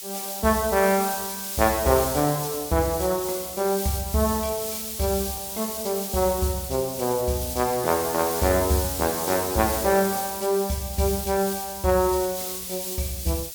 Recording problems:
background hiss; SNR 5 dB

